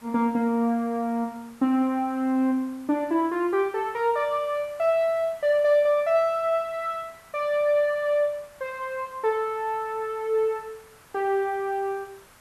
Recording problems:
background hiss; SNR 26 dB

